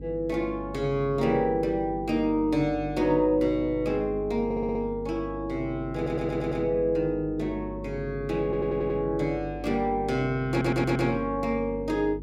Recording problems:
hum; 50 Hz, harmonics up to 450 Hz, SNR 12 dB
audio stuttering; 4 times, first at 4.5 s

